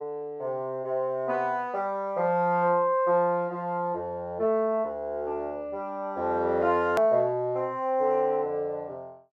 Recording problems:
edit click; at 7 s

